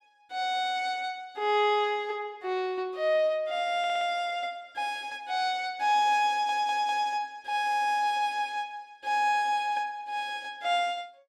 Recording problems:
stutter; at 4 s and at 6.5 s

